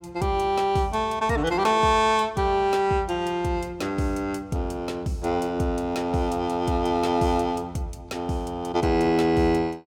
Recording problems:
none

